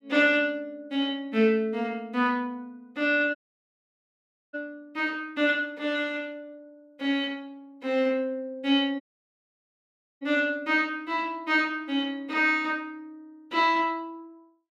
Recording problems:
audio cutting out; at 3.5 s for 1 s and at 9 s for 1 s

